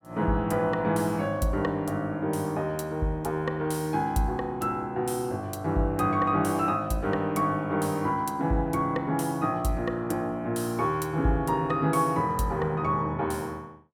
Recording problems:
none

